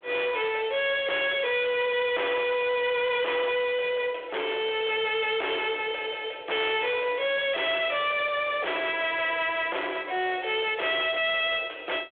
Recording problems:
phone line; 340 Hz to 3.5 kHz, G.726
distortion; hard clipping, signal-to-distortion ratio 6 dB
crackle; from 1.5 to 2.5 s; loose cable, SNR 27 dB

